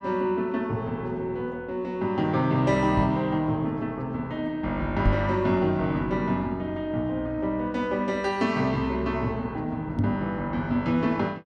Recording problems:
microphone bump; at 3 s, at 5 s and at 10 s; peak +5 dB vs average level

